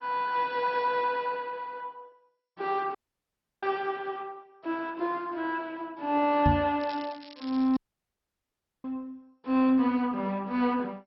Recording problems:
lossy codec; MP2, log-spectral distance 3 dB, nothing above 4.9 kHz
dropout; at 3 s for 0.5 s and at 8 s for 1 s
knock on the microphone; at 6.5 s; peak +6 dB vs average level
crackling; at 7 s; loose cable, SNR 20 dB

